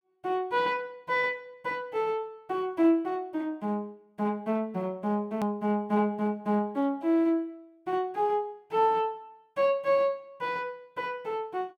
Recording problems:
hard cut with a click; at 5.5 s

